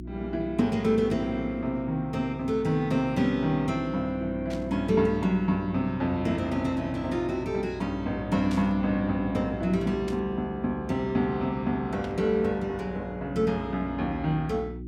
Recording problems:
electrical hum; 60 Hz, harmonics up to 360 Hz, SNR 13 dB
static burst; 4 times, first at 4.5 s; peak -10 dB vs average level

